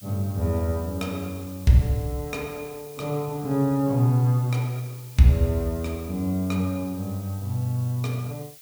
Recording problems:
background hiss; slope +5 dB per octave, SNR 20 dB

